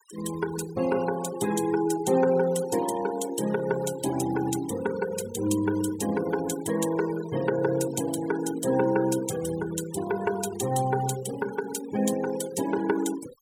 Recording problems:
denoising artefacts; signal-to-artefact ratio 14 dB

